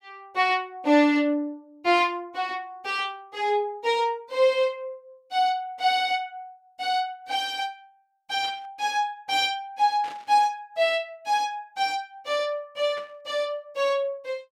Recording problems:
burst of static; 4 times, first at 2 s; peak -12 dB vs average level

